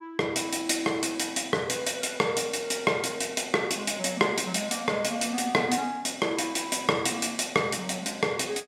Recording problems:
none

